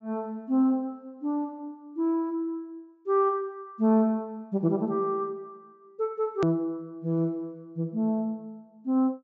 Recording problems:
treble missing; nothing above 8 kHz
edit click; at 6.5 s

